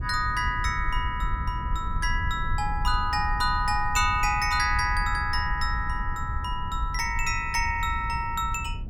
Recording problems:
rumble; below 78 Hz, SNR 6 dB

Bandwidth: 17 kHz